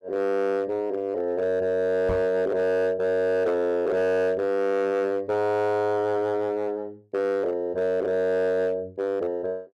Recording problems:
distorted audio; hard clipping, signal-to-distortion ratio 12 dB
microphone bump; at 2 s; peak -2 dB vs average level

